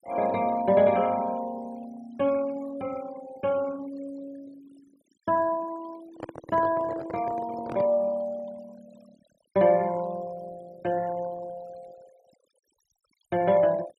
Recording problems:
noise reduction artefacts; signal-to-artefact ratio 22 dB
handling noise; from 6 to 8 s; peak -6 dB vs average level

